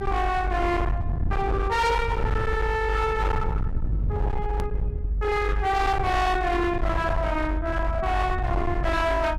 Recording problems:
distorted audio; hard clipping, uneven, signal-to-distortion ratio 8 dB
low-frequency rumble; below 110 Hz, strongest tone 48 Hz, SNR 3 dB
click at an edit; at 4.5 s

